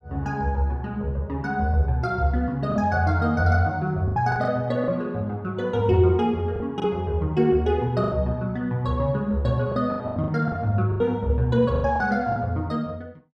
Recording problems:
packet loss; 7% of the sound replaced, filled with the last packet

